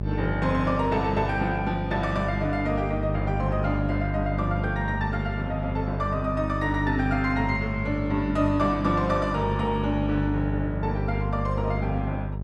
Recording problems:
hum; 50 Hz, harmonics up to 650 Hz, SNR 3 dB

